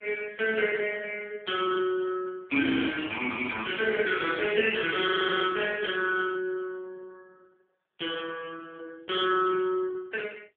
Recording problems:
phone line; 240 Hz to 3.4 kHz, AMR-NB
audio freezing; at 2.5 s and at 5 s

